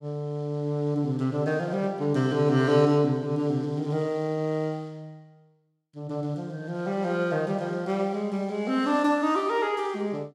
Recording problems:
none

